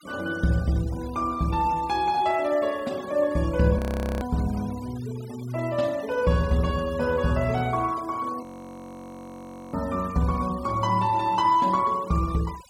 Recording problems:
denoising artefacts; signal-to-artefact ratio 21 dB
frozen audio; at 4 s and at 8.5 s for 1.5 s

